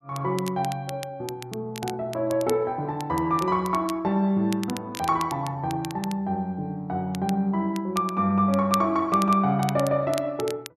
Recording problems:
crackling; vinyl, SNR 16 dB

